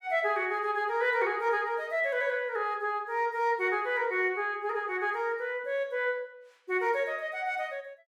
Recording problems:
none

